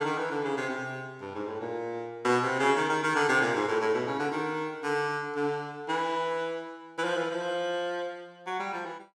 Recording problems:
none

